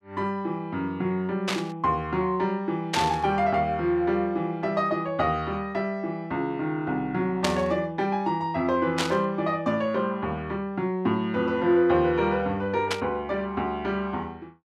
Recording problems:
static burst; 5 times, first at 1.5 s; peak +4 dB vs average level

